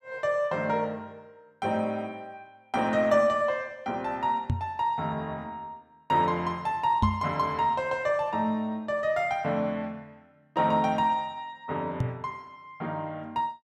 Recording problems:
knock on the microphone; at 4.5 s, at 7 s and at 12 s; peak +6 dB vs average level

